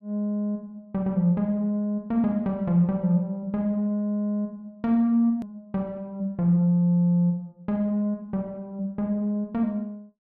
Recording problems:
click at an edit; at 5.5 s

